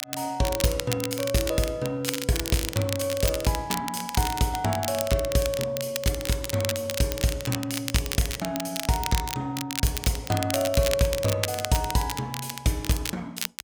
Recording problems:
crackling; vinyl, SNR 5 dB

